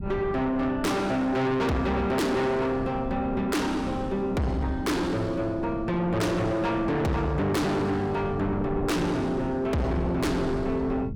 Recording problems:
distortion; soft clipping, signal-to-distortion ratio 6 dB
low-frequency rumble; below 200 Hz, SNR 12 dB

